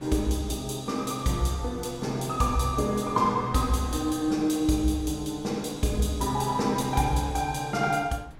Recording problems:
wind noise; below 470 Hz, SNR 21 dB

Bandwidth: 16.5 kHz